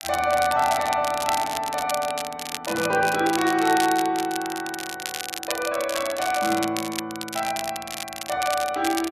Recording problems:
crackling; vinyl, SNR 8 dB

